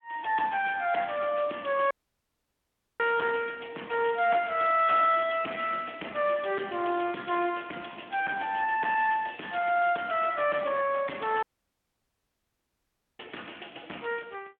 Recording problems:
telephone audio; 240 Hz to 3.3 kHz, Speex
distorted audio; soft clipping, signal-to-distortion ratio 9 dB
audio cutting out; at 2 s for 1 s and at 11 s for 2 s

